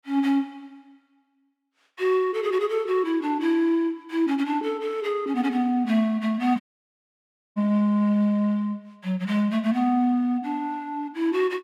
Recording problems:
dropout; at 6.5 s for 1 s

